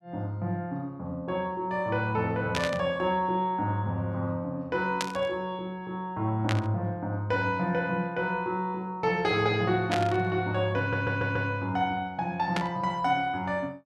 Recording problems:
static burst; 5 times, first at 2.5 s; peak +2 dB vs average level
stutter; at 11 s

